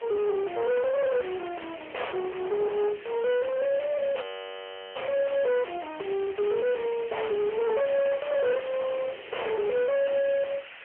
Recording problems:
phone line; 340 Hz to 3 kHz, AMR-NB
distorted audio; soft clipping, signal-to-distortion ratio 6 dB
background hiss; SNR 16 dB
wind noise; below 1.1 kHz, SNR 16 dB
audio freezing; at 4 s for 0.5 s

